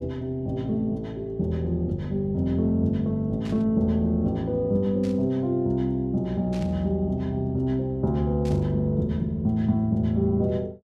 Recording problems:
static burst; 4 times, first at 3.5 s; peak -15 dB vs average level

